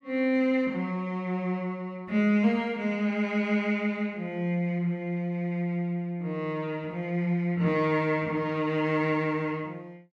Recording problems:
none

